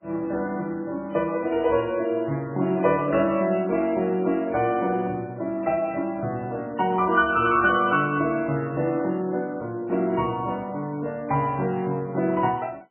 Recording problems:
lossy codec; MP3, log-spectral distance 2 dB, nothing above 2.7 kHz

